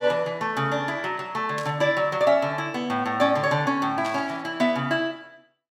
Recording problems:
static burst; at 1.5 s and at 4 s; peak -8 dB vs average level

